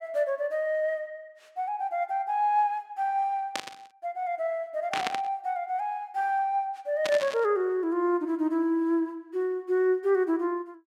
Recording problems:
static burst; at 3.5 s, at 5 s and at 7 s; peak +2 dB vs average level

